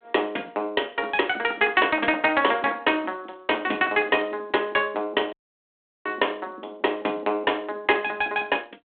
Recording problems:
telephone audio; 240 Hz to 3.6 kHz, G.726
audio cutting out; at 5.5 s for 0.5 s

